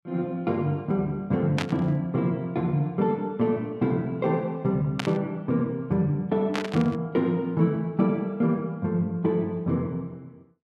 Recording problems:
static burst; at 1.5 s, at 5 s and at 6.5 s; peak 0 dB vs average level

